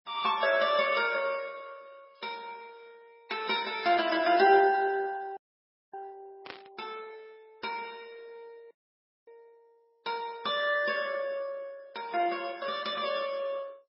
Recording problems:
lossy compression; MP2, then MP3, log-spectral distance 4 dB, nothing above 5.3 kHz
audio freezing; at 5.5 s for 0.5 s and at 8.5 s for 0.5 s
burst of static; at 6.5 s; peak -9 dB vs average level

